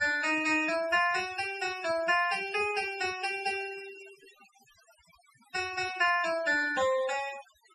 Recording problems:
denoising artefacts; signal-to-artefact ratio 14 dB

